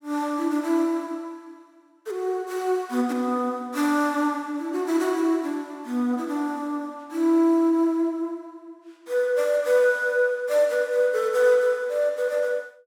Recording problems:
none

